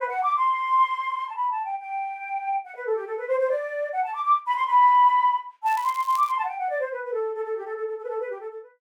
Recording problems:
crackle; at 5.5 s; loose cable, SNR 21 dB

